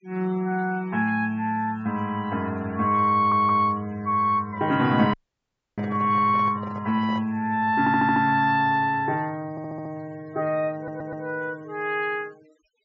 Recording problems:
treble missing; nothing above 8 kHz
denoising artefacts; signal-to-artefact ratio 26 dB
stutter; 4 times, first at 3 s
microphone handling noise; from 4.5 to 7.5 s; peak -12 dB vs average level
audio cutting out; at 5 s for 0.5 s

